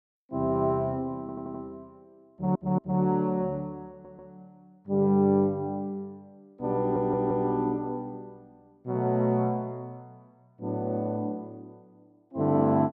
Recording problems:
stutter; 4 times, first at 1 s

